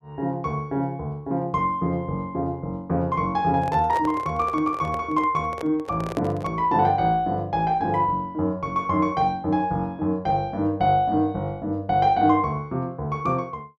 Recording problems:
microphone handling noise; from 3.5 to 6.5 s; peak -4 dB vs average level

